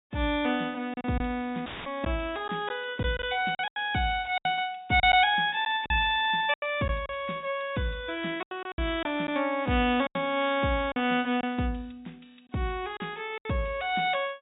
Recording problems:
treble cut off; nothing above 4 kHz
packet loss; 7% of the sound replaced, filled with silence
dropout; at 1.5 s; filled with static

